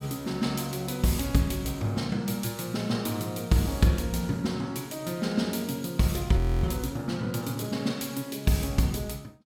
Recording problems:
audio freezing; at 6.5 s

